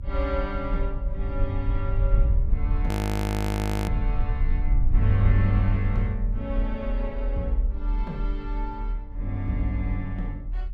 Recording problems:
rumble; below 54 Hz, strongest tone 38 Hz, SNR -1 dB
frozen audio; at 3 s for 1 s

